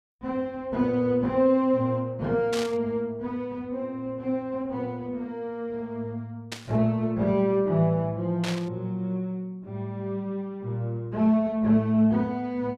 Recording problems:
static burst; at 2.5 s, at 6.5 s and at 8.5 s; peak -2 dB vs average level

